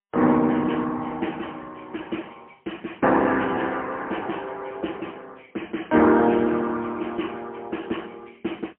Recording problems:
phone line; 190 Hz to 3.2 kHz, AMR-NB, then MP3

